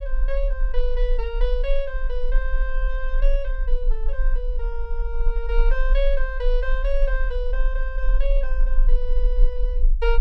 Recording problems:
rumble; below 36 Hz, strongest tone 22 Hz, SNR -5 dB

